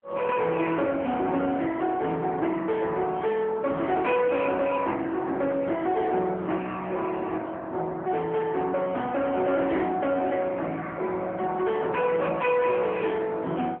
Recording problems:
telephone audio; 190 Hz to 3.4 kHz, AMR-NB
distorted audio; soft clipping, signal-to-distortion ratio 12 dB

